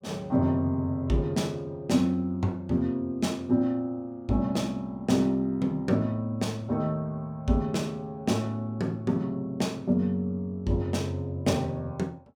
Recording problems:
none

